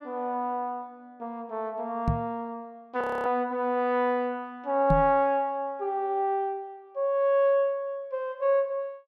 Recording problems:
microphone bump; at 2 s and at 5 s; peak +5 dB vs average level
frozen audio; at 3 s

